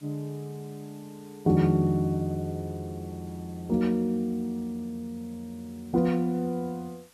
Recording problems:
hiss; slope 0 dB per octave, SNR 27 dB

